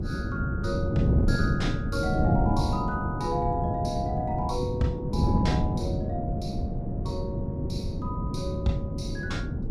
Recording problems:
wind noise; below 220 Hz, SNR -4 dB

